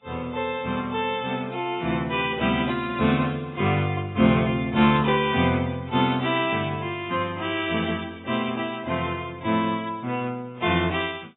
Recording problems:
codec artefacts; AAC, log-spectral distance 3 dB, nothing above 3.2 kHz

